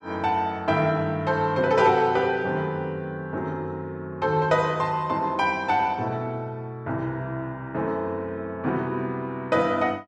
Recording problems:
none

